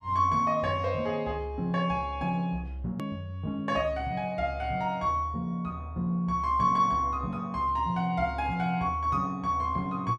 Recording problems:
hard cut with a click; at 3 s

